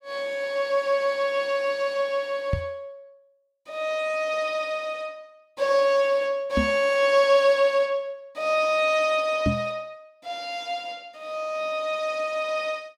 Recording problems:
microphone thump; at 2.5 s, at 6.5 s and at 9.5 s; peak +4 dB vs average level

